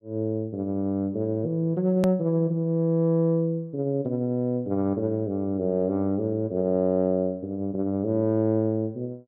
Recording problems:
hard cut with a click; at 2 s

